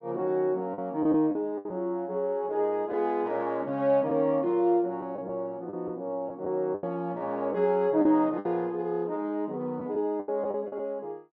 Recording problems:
packet loss; 6% of the sound replaced, filled with the last packet

